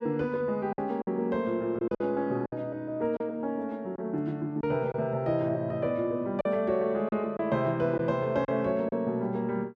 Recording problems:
lost packets; 5% of the sound replaced, filled with silence

